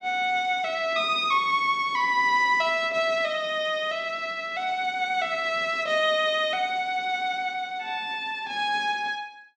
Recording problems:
none

